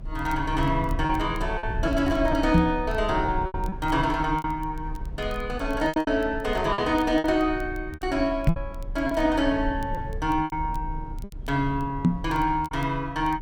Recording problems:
rumble; below 80 Hz, strongest tone 34 Hz, SNR 10 dB
crackle; vinyl, SNR 29 dB
lost packets; 7% of the sound replaced, filled with repeated pitch periods
knock on the microphone; at 2.5 s, at 8.5 s and at 12 s; peak +9 dB vs average level

